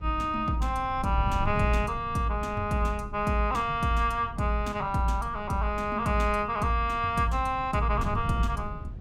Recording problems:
wind on the microphone; below 140 Hz, SNR 11 dB

